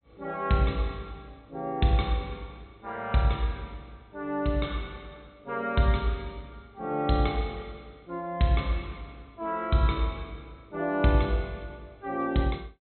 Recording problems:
treble missing; nothing above 4.2 kHz

